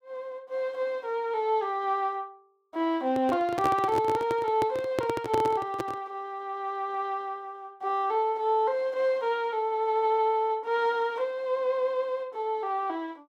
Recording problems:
handling noise; from 3 to 6 s; peak +2 dB vs average level

